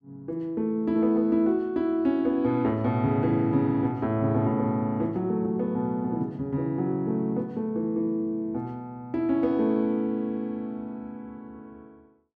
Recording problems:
none

